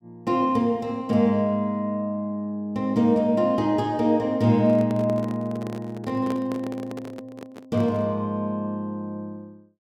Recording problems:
microphone handling noise; from 4.5 to 8 s; peak -6 dB vs average level

